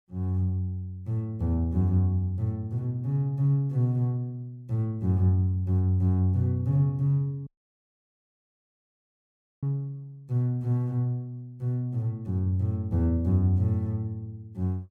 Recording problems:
dropout; at 7.5 s for 2 s

